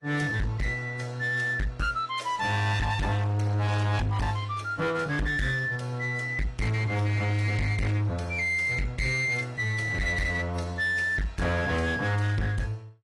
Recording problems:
lossy compression; AAC, log-spectral distance 2 dB, nothing above 11 kHz
distorted audio; hard clipping, signal-to-distortion ratio 7 dB

